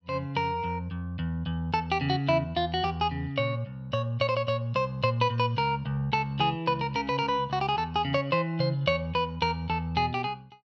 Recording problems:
none

